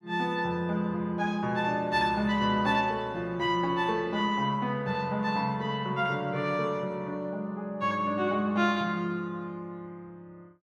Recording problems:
none

